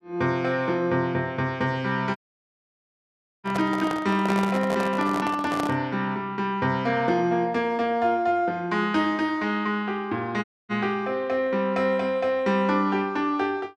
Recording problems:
handling noise; from 2 to 6 s; peak -1 dB vs average level
audio cutting out; at 2 s for 1.5 s and at 10 s

